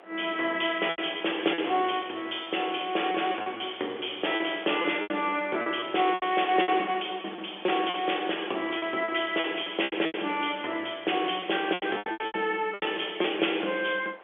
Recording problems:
telephone audio; 260 Hz to 3.5 kHz, G.711
wind noise; below 1.6 kHz, SNR 23 dB
packet loss; 11% of the sound replaced, filled with repeated pitch periods

